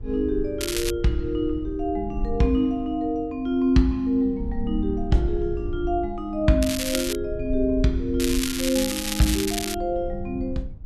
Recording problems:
rumble; below 70 Hz, SNR 11 dB
crackle; at 0.5 s, at 6.5 s and from 8 to 9.5 s; loose cable, SNR 4 dB

